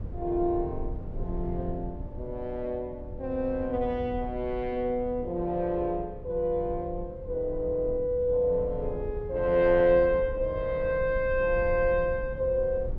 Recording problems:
low-frequency rumble; below 98 Hz, SNR 12 dB

